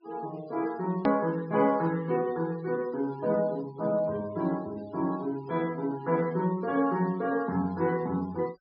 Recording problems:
treble cut off; nothing above 5.5 kHz
noise reduction artefacts; signal-to-artefact ratio 23 dB
click at an edit; at 1 s

